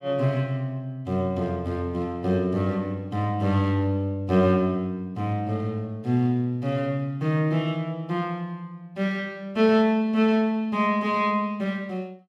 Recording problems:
none

